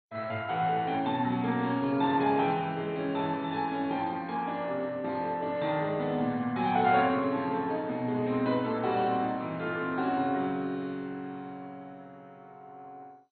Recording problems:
lossy compression; MP2, then MP2, log-spectral distance 2 dB, nothing above 3.8 kHz

